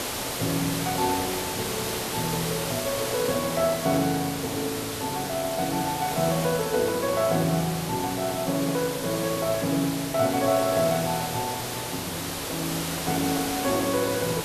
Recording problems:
hiss; slope -3 dB per octave, SNR 4 dB

